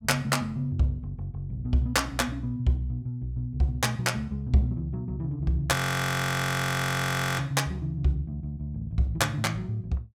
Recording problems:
frozen audio; at 6 s for 1.5 s

